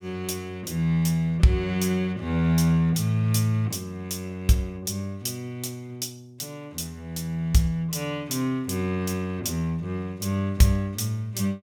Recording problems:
none

